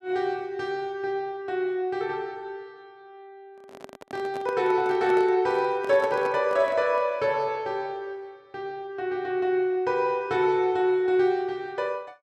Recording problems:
microphone handling noise; from 3.5 to 7 s; peak -7 dB vs average level

